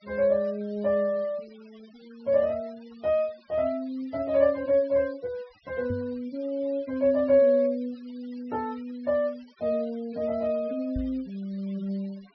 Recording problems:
low-pass filter; nothing above 5.5 kHz
noise reduction artefacts; signal-to-artefact ratio 27 dB
microphone thump; at 6 s and at 11 s; peak -4 dB vs average level

